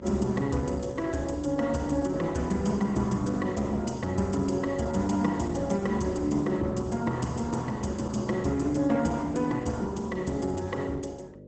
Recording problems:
codec artefacts; Opus, log-spectral distance 4 dB, nothing above 8 kHz
mains hum; 50 Hz, harmonics up to 600 Hz, SNR 14 dB

